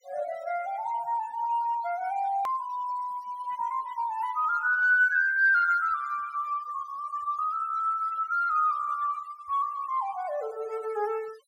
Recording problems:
noise reduction artefacts; signal-to-artefact ratio 22 dB
click at an edit; at 2.5 s

